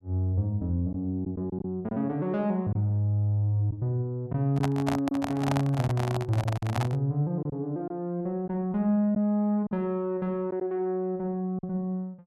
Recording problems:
packet loss; 3% of the sound replaced, filled with silence
microphone handling noise; from 4.5 to 7 s; peak +1 dB vs average level

